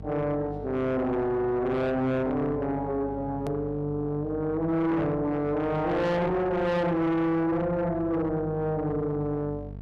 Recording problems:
distorted audio; soft clipping, signal-to-distortion ratio 8 dB
electrical hum; 50 Hz, harmonics up to 700 Hz, SNR 15 dB
click at an edit; at 3.5 s

